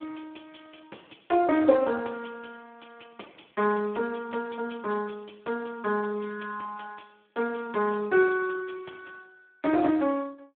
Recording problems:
phone line; 240 Hz to 2.6 kHz, Speex

